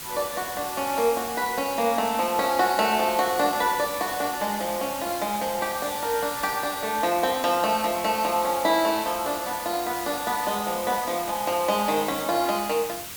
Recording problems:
hiss; slope 0 dB per octave, SNR 9 dB

